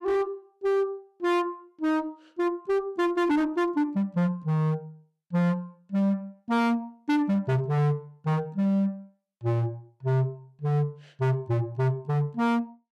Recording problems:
distorted audio; hard clipping, signal-to-distortion ratio 6 dB

